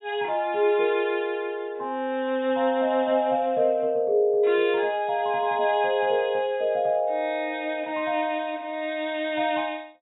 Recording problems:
treble cut off; nothing above 4 kHz

